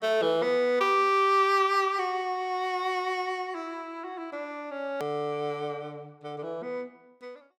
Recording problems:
click at an edit; at 5 s

